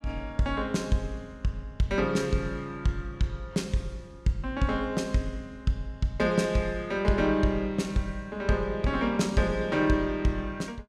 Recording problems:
none

